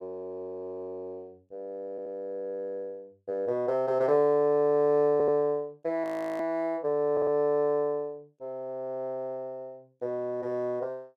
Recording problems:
audio stuttering; at 2 s, at 5 s and at 7 s
audio freezing; at 6 s

